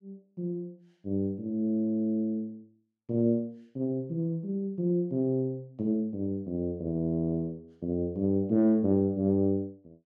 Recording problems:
none

